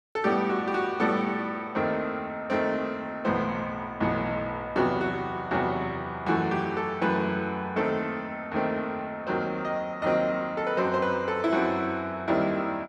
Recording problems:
none

